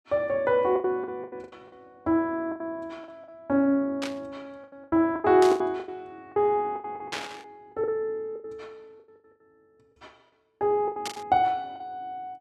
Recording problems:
lost packets; 14% of the sound replaced, filled with the last packet
static burst; 4 times, first at 4 s; peak -2 dB vs average level

